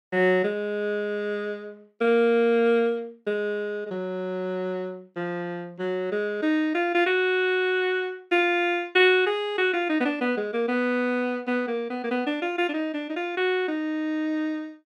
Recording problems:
none

